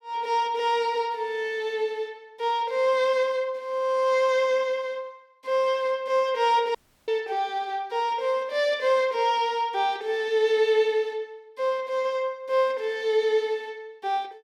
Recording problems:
dropout; at 7 s

